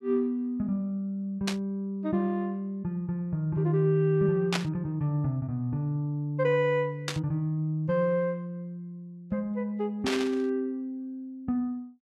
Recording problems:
burst of static; 4 times, first at 1.5 s; peak +4 dB vs average level

